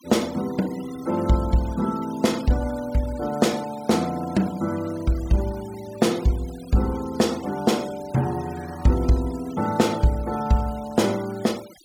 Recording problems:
denoising artefacts; signal-to-artefact ratio 19 dB

